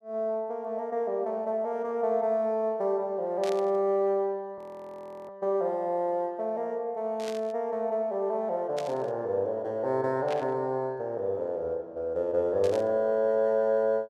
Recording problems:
burst of static; 5 times, first at 3.5 s; peak -7 dB vs average level
frozen audio; at 4.5 s for 0.5 s

